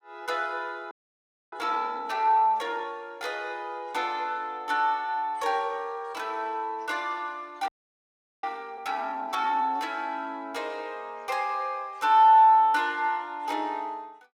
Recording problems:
audio freezing; at 1 s for 0.5 s and at 7.5 s for 1 s

